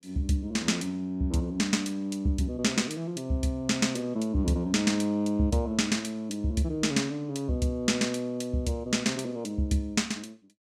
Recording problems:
none

